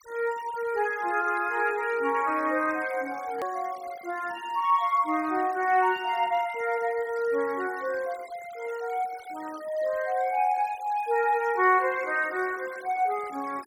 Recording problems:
denoising artefacts; signal-to-artefact ratio 21 dB
hard cut with a click; at 3.5 s

